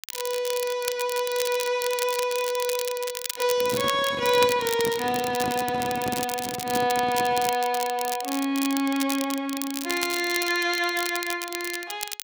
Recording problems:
crackling; vinyl, SNR 7 dB
handling noise; from 3.5 to 7.5 s; peak -3 dB vs average level

